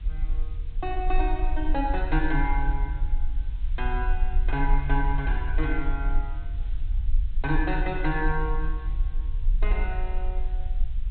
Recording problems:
treble cut off; nothing above 4 kHz
hiss; SNR 27 dB
rumble; below 44 Hz, SNR -1 dB

